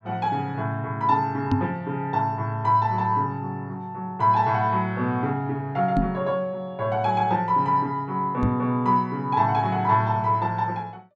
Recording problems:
microphone bump; at 1.5 s, at 6 s and at 8.5 s; peak +4 dB vs average level

